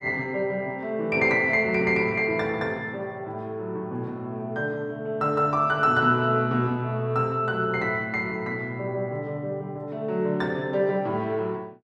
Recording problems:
none

